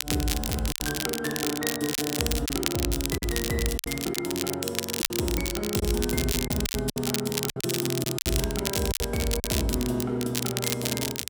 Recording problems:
crackle; vinyl, SNR 1 dB
lost packets; 8% of the sound replaced, filled with silence

